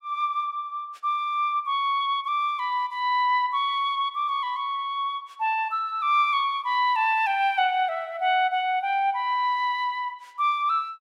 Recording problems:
none

